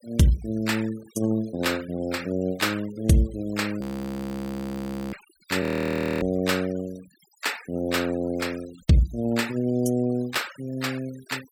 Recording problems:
noise reduction artefacts; signal-to-artefact ratio 19 dB
audio freezing; at 4 s for 1.5 s and at 5.5 s for 0.5 s

